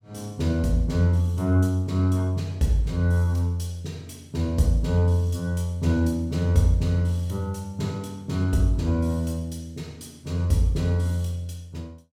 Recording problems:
none

